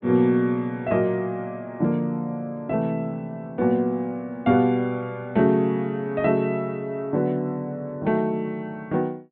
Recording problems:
treble missing; nothing above 4 kHz

